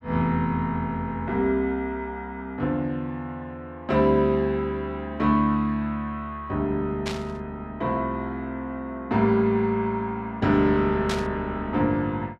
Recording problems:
burst of static; at 7 s and at 11 s; peak -2 dB vs average level

